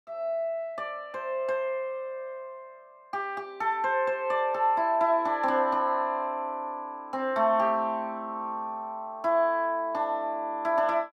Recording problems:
none

